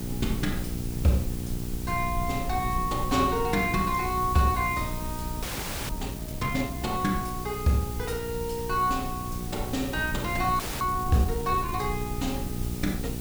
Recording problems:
mains hum; 60 Hz, harmonics up to 840 Hz, SNR 9 dB
hiss; slope -2 dB per octave, SNR 12 dB
rumble; below 98 Hz, SNR 10 dB
frozen audio; at 5.5 s and at 11 s

